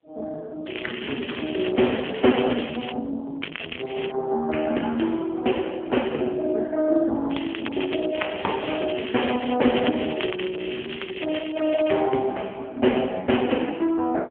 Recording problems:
phone line; 190 Hz to 3.3 kHz, AMR-NB
crackle; from 0.5 to 3 s, at 3.5 s and from 7.5 to 12 s; loose cable, SNR 10 dB

